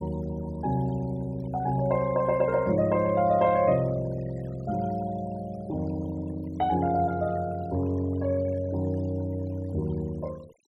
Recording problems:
noise reduction artefacts; signal-to-artefact ratio 22 dB

